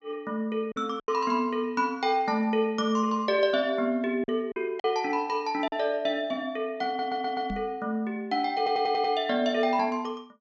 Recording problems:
low-pass filter; nothing above 8 kHz
packet loss; 3% of the sound replaced, filled with silence
stutter; at 7 s and at 8.5 s
microphone bump; at 7.5 s; peak -3 dB vs average level

